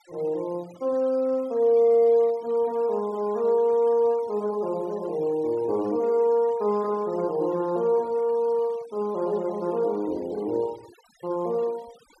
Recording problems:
noise reduction artefacts; signal-to-artefact ratio 26 dB

